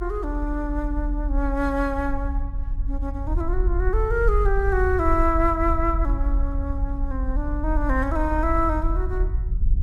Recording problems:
rumble; below 56 Hz, strongest tone 40 Hz, SNR 1 dB

